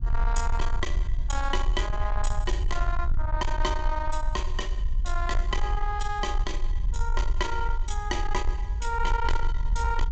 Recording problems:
low-pass filter; nothing above 8 kHz
distorted audio; soft clipping, signal-to-distortion ratio 11 dB
low-frequency rumble; below 50 Hz, strongest tone 20 Hz, SNR -1 dB

